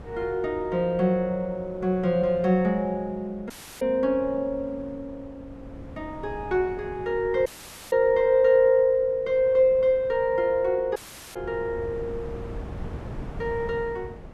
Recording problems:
wind noise; below 320 Hz, SNR 18 dB
dropout; at 3.5 s, at 7.5 s and at 11 s

